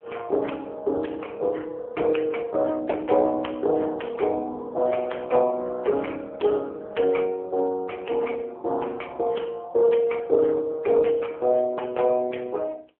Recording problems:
telephone audio; 320 Hz to 3.3 kHz, AMR-NB

